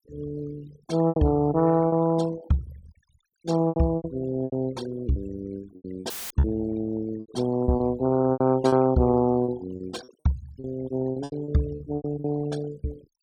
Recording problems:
denoising artefacts; signal-to-artefact ratio 20 dB
packet loss; 11% of the sound replaced, filled with repeated pitch periods
audio cutting out; at 6 s; filled with static

